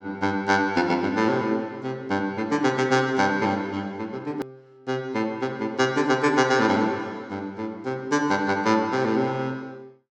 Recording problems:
hard cut with a click; at 4.5 s

